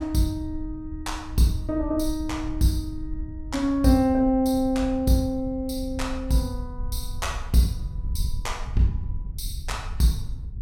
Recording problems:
wind on the microphone; below 72 Hz, SNR 10 dB

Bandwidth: 16.5 kHz